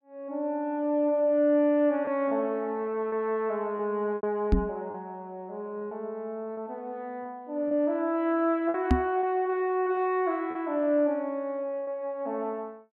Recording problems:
packet loss; 4% of the sound replaced, filled with repeated pitch periods
microphone bump; at 4.5 s and at 9 s; peak +9 dB vs average level

